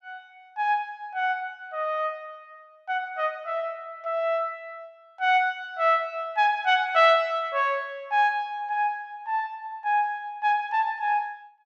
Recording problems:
none

